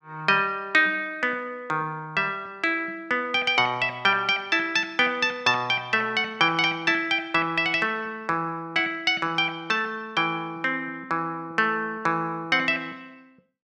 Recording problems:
none

